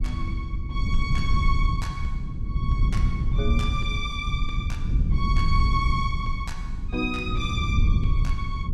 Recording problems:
low-frequency rumble; below 98 Hz, SNR -4 dB

